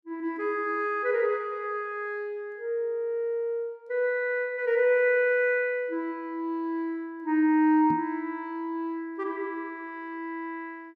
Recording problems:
microphone bump; at 8 s; peak -3 dB vs average level

